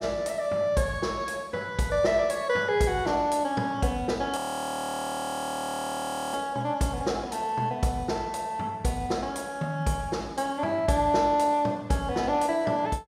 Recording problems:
audio freezing; at 4.5 s for 2 s

